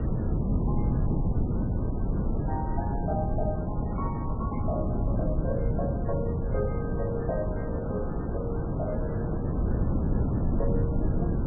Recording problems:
lossy codec; MP3, log-spectral distance 3 dB
hiss; SNR 4 dB
wind noise; below 200 Hz, SNR -6 dB

